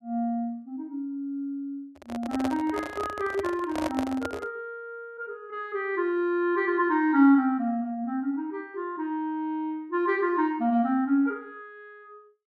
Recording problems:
handling noise; from 2 to 4.5 s; peak 0 dB vs average level

